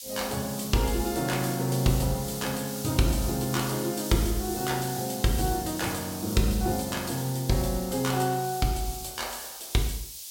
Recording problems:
hiss; SNR 8 dB

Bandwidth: 16.5 kHz